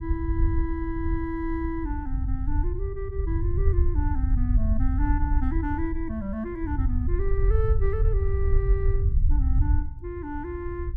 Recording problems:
rumble; below 76 Hz, SNR -6 dB

